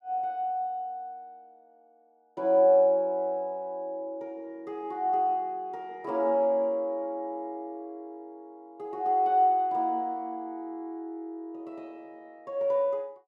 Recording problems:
none

